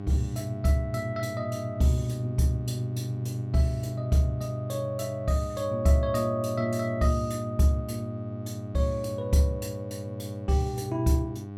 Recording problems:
electrical hum; 50 Hz, harmonics up to 1.1 kHz, SNR 12 dB

